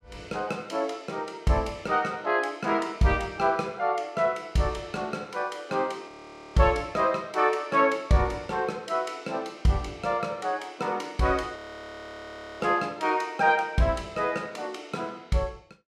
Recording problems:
frozen audio; at 6 s and at 12 s for 1 s

